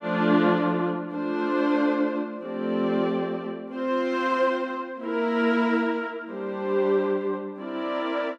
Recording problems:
none

